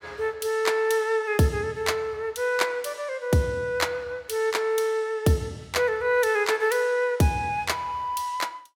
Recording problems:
none

